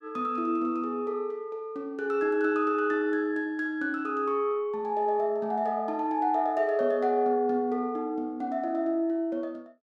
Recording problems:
none

